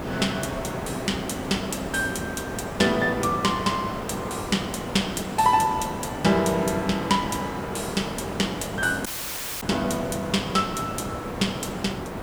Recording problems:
hiss; SNR 6 dB
audio cutting out; at 9 s for 0.5 s

